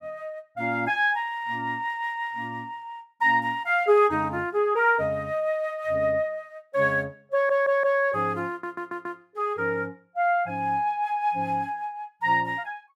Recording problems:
stutter; at 7.5 s and at 8.5 s

